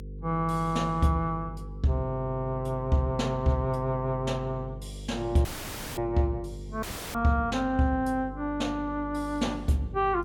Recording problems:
hum; 50 Hz, harmonics up to 500 Hz, SNR 12 dB
dropout; at 5.5 s for 0.5 s and at 7 s

